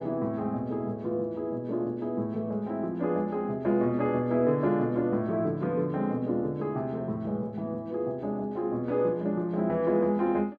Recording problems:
none

